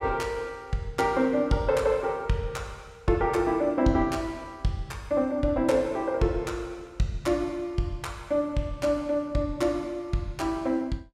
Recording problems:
none

